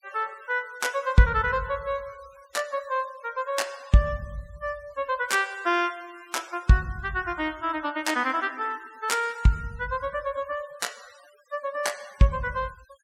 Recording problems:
denoising artefacts; signal-to-artefact ratio 23 dB

